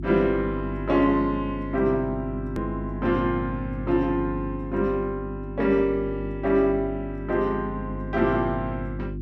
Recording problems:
electrical hum; 50 Hz, harmonics up to 350 Hz, SNR 8 dB
edit click; at 2.5 s

